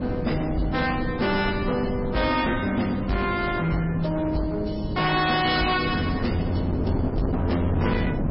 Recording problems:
lossy compression; MP3, log-spectral distance 4 dB, nothing above 4.5 kHz
distortion; hard clipping, uneven, signal-to-distortion ratio 7 dB
wind on the microphone; below 320 Hz, SNR 6 dB

